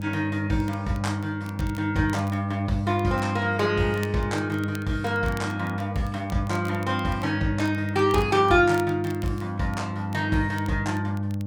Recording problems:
hum; 50 Hz, harmonics up to 600 Hz, SNR 5 dB
crackling; vinyl, SNR 23 dB

